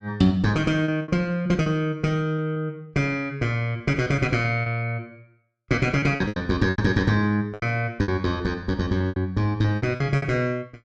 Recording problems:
lost packets; 9% of the sound replaced, filled with repeated pitch periods

